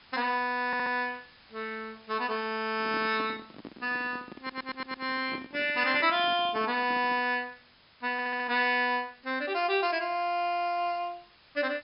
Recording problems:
treble cut off; nothing above 5.5 kHz
background hiss; SNR 27 dB
stutter; at 0.5 s, at 4.5 s and at 8 s
microphone handling noise; from 2.5 to 7.5 s; peak -7 dB vs average level

